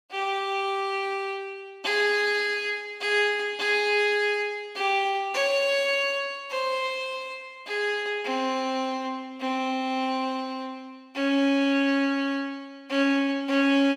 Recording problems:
none

